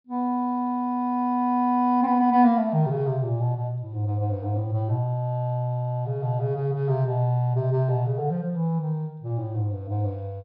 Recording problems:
low-pass filter; nothing above 5.5 kHz

